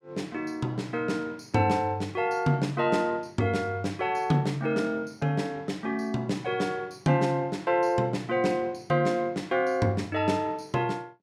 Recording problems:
none

